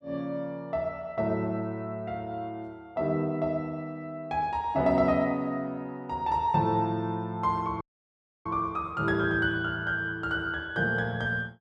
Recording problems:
dropout; at 8 s for 0.5 s

